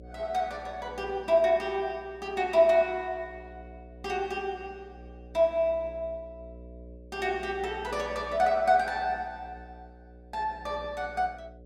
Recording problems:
hum; 60 Hz, harmonics up to 600 Hz, SNR 20 dB

